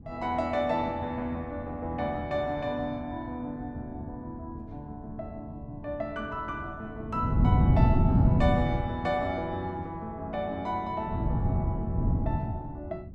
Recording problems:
wind on the microphone; below 170 Hz, SNR -6 dB

